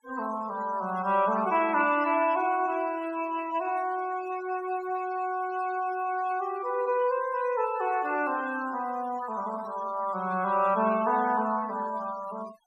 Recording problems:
denoising artefacts; signal-to-artefact ratio 18 dB

